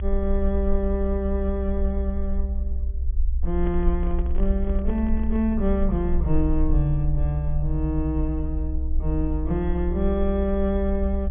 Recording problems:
treble cut off; nothing above 3.4 kHz
low-frequency rumble; below 62 Hz, SNR 1 dB
handling noise; from 3.5 to 5.5 s; peak -7 dB vs average level

